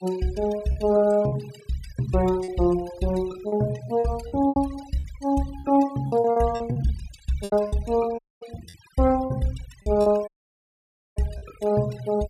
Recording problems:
denoising artefacts; signal-to-artefact ratio 17 dB
lost packets; 9% of the sound replaced, filled with repeated pitch periods
dropout; at 8 s and at 10 s for 1 s

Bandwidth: 15 kHz